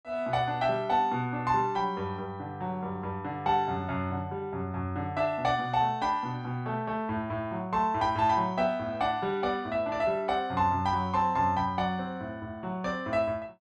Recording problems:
none

